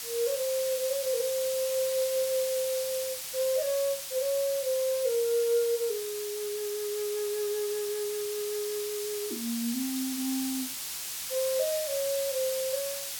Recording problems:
background hiss; slope +3 dB per octave, SNR 4 dB

